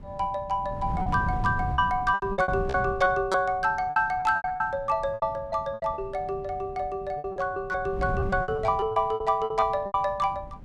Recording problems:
wind on the microphone; below 180 Hz, SNR 11 dB
lost packets; 13% of the sound replaced, filled with repeated pitch periods

